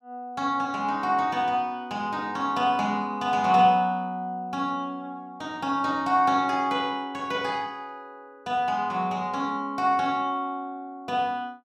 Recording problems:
none

